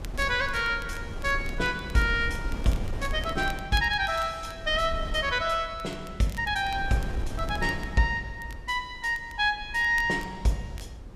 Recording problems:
wind on the microphone; below 110 Hz, SNR 11 dB
crackle; vinyl, SNR 23 dB

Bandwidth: 14.5 kHz